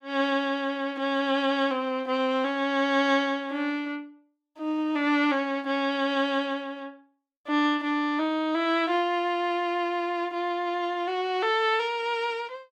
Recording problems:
none

